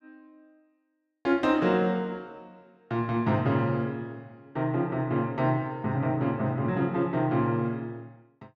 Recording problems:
none

